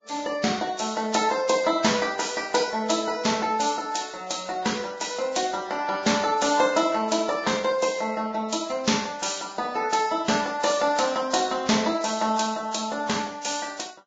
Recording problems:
codec artefacts; Vorbis, log-spectral distance 5 dB, nothing above 7.3 kHz

